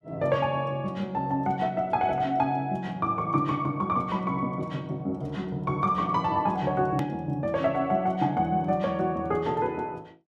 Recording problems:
click at an edit; at 7 s

